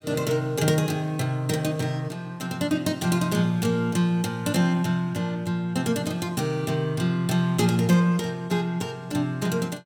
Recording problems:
none

